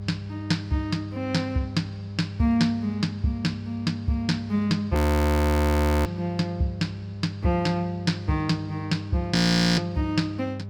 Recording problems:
hum; 50 Hz, harmonics up to 600 Hz, SNR 10 dB
audio freezing; at 5 s for 1 s and at 9.5 s

